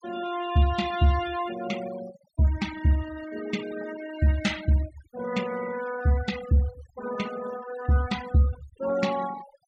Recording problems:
denoising artefacts; signal-to-artefact ratio 14 dB

